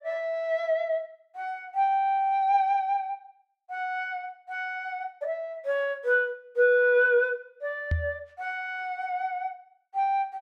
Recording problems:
microphone bump; at 8 s; peak +3 dB vs average level

